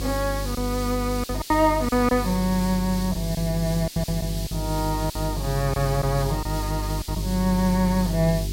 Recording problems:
electrical hum; 50 Hz, harmonics up to 400 Hz, SNR 5 dB
hiss; SNR 11 dB
lost packets; 7% of the sound replaced, filled with silence

